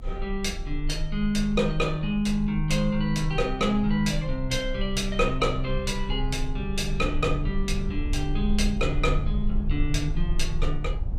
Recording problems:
low-frequency rumble; below 44 Hz, SNR 6 dB

